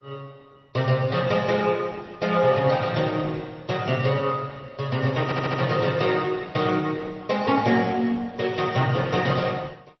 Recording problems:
codec artefacts; MP3, then Opus, log-spectral distance 4 dB
audio stuttering; at 5.5 s

